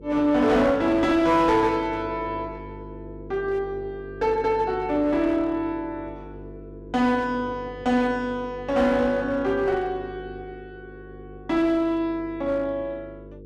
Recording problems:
distortion; hard clipping, uneven, signal-to-distortion ratio 11 dB
electrical hum; 50 Hz, harmonics up to 500 Hz, SNR 17 dB

